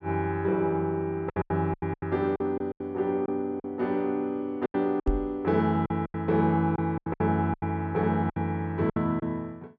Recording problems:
packet loss; 12% of the sound replaced, filled with silence
microphone bump; at 5 s; peak +3 dB vs average level

